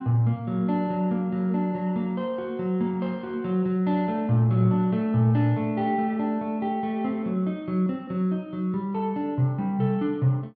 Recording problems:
none

